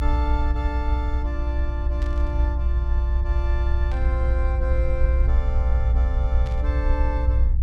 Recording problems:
low-frequency rumble; below 62 Hz, strongest tone 60 Hz, SNR -10 dB
burst of static; at 2 s, at 4 s and at 6.5 s; peak -7 dB vs average level

